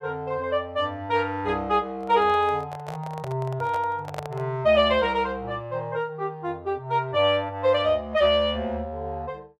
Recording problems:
handling noise; from 2 to 4.5 s; peak -4 dB vs average level

